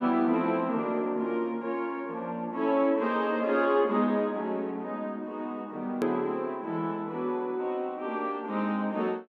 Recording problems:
edit click; at 6 s

